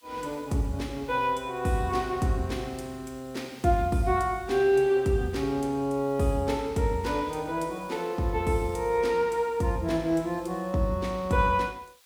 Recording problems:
background hiss; SNR 28 dB

